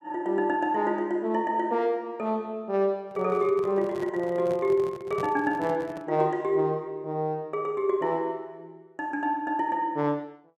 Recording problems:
microphone handling noise; from 3 to 6 s; peak -6 dB vs average level

